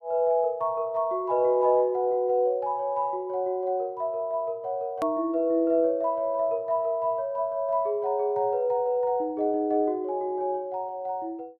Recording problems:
hard cut with a click; at 5 s

